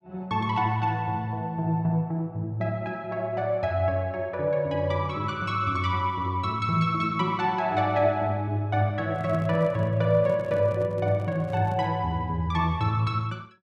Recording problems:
handling noise; from 9 to 12 s; peak -8 dB vs average level

